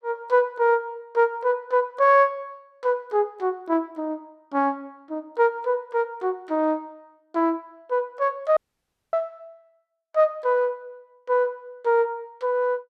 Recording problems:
dropout; at 8.5 s for 0.5 s

